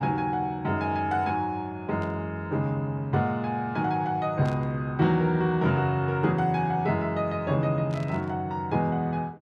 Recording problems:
burst of static; at 2 s, at 4.5 s and at 8 s; peak -14 dB vs average level

